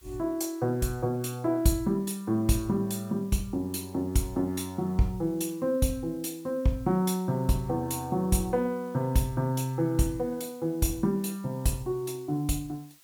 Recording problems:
background hiss; slope +1 dB per octave, SNR 27 dB

